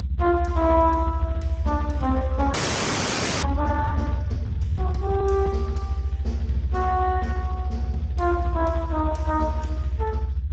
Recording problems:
lossy codec; Speex, log-spectral distance 3 dB
low-frequency rumble; below 84 Hz, strongest tone 64 Hz, SNR 1 dB
audio freezing; at 2.5 s for 1 s

